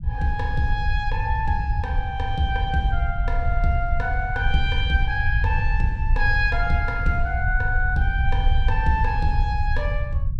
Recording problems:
rumble; below 76 Hz, SNR 0 dB

